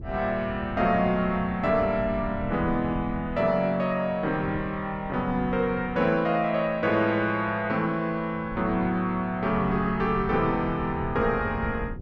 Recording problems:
wind on the microphone; below 160 Hz, SNR 13 dB

